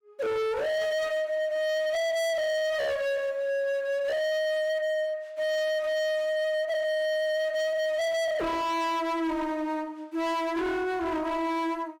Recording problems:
distorted audio; hard clipping, signal-to-distortion ratio 6 dB

